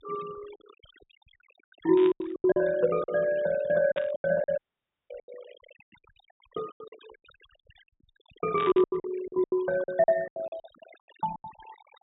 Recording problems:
low-pass filter; nothing above 4 kHz
noise reduction artefacts; signal-to-artefact ratio 22 dB
packet loss; 18% of the sound replaced, filled with silence
static burst; at 2 s, at 4 s and at 8.5 s; peak -7 dB vs average level
audio cutting out; at 4.5 s for 0.5 s

